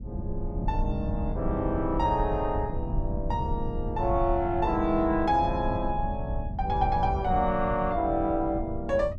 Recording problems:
rumble; below 120 Hz, SNR 5 dB

